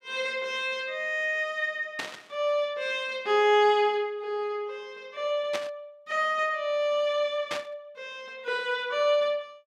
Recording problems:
static burst; at 2 s, at 5.5 s and at 7.5 s; peak -2 dB vs average level

